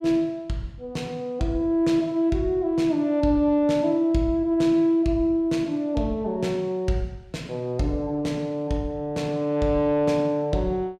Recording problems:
none

